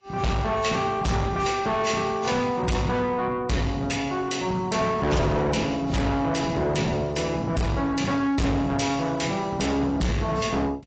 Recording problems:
codec artefacts; AAC, log-spectral distance 4 dB, nothing above 7.6 kHz
distortion; soft clipping, signal-to-distortion ratio 7 dB

